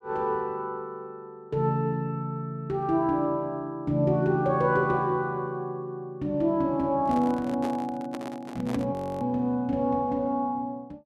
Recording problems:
microphone handling noise; from 7 to 9 s; peak -3 dB vs average level
frozen audio; at 9 s

